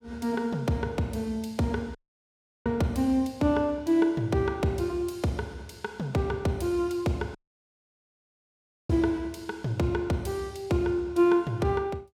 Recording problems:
audio cutting out; at 2 s for 0.5 s and at 7.5 s for 1.5 s

